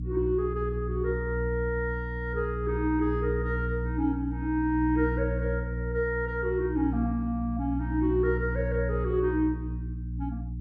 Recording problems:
hum; 60 Hz, harmonics up to 300 Hz, SNR 4 dB

